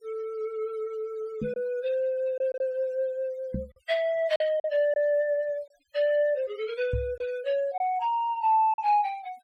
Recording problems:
denoising artefacts; signal-to-artefact ratio 24 dB
packet loss; 3% of the sound replaced, filled with silence
microphone bump; at 1.5 s, at 3.5 s and at 7 s; peak 0 dB vs average level

